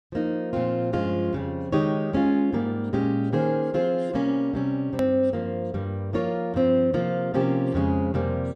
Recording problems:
hard cut with a click; at 5 s

